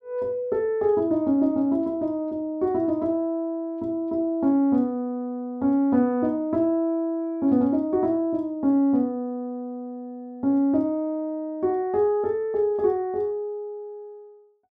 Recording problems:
none

